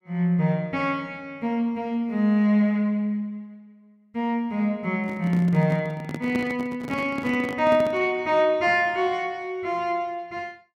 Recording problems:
handling noise; from 5 to 8 s; peak -2 dB vs average level

